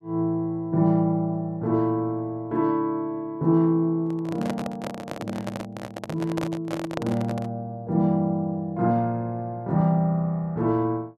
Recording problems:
microphone handling noise; from 4 to 7.5 s; peak 0 dB vs average level

